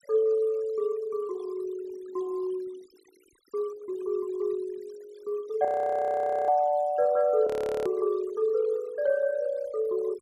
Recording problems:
denoising artefacts; signal-to-artefact ratio 26 dB
frozen audio; at 5.5 s for 1 s and at 7.5 s

